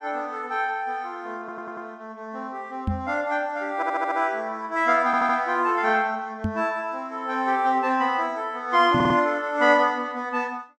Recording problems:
audio stuttering; 4 times, first at 1.5 s
microphone bump; at 3 s, at 6.5 s and at 9 s; peak +1 dB vs average level

